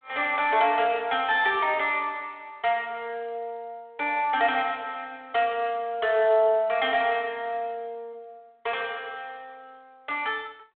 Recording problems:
telephone audio; 260 Hz to 3.7 kHz, G.726

